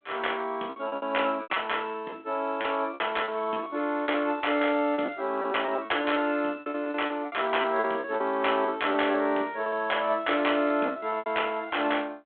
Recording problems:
telephone audio; 240 Hz to 3.4 kHz, G.726
packet loss; 13% of the sound replaced, filled with repeated pitch periods

